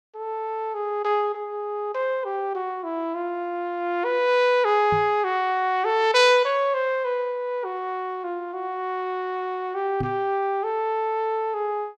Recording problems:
knock on the microphone; at 5 s and at 10 s; peak -2 dB vs average level

